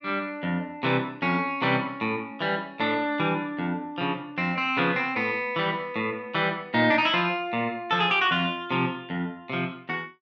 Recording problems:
none

